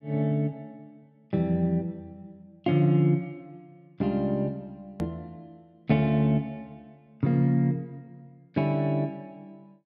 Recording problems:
click at an edit; at 5 s

